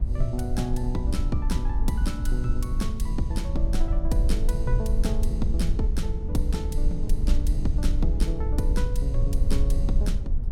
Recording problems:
low-frequency rumble; below 52 Hz, SNR -3 dB

